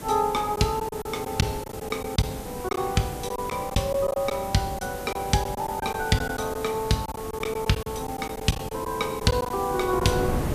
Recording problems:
background hiss; SNR 12 dB
wind noise; below 440 Hz, SNR 13 dB
packet loss; 8% of the sound replaced, filled with silence

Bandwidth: 14.5 kHz